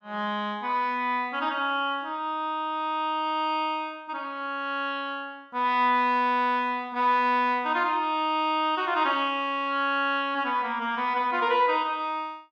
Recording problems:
none

